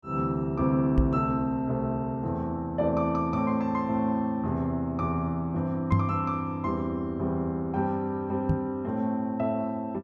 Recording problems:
microphone thump; at 1 s, at 6 s and at 8.5 s; peak +7 dB vs average level

